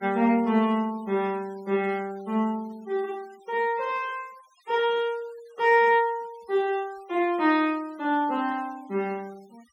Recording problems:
noise reduction artefacts; signal-to-artefact ratio 26 dB

